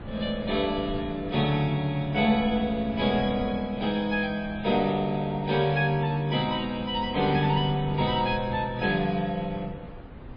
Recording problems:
lossy compression; MP3, log-spectral distance 3 dB
wind noise; below 300 Hz, SNR 15 dB

